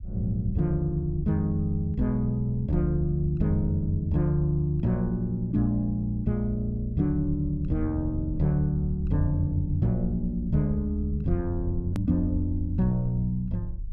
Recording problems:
rumble; below 66 Hz, SNR 12 dB
hard cut with a click; at 12 s

